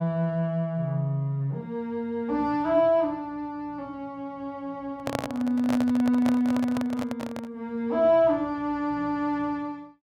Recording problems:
handling noise; from 5 to 7.5 s; peak +1 dB vs average level

